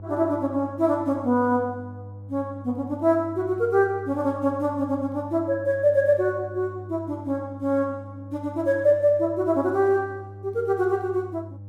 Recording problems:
electrical hum; 50 Hz, harmonics up to 600 Hz, SNR 16 dB

